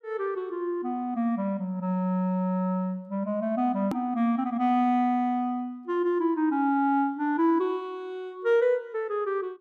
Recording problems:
edit click; at 4 s

